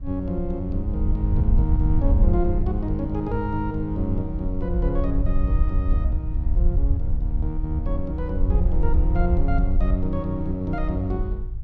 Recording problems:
wind noise; below 66 Hz, SNR -2 dB

